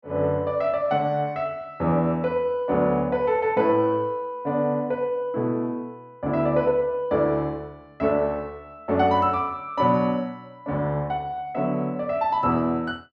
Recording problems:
none

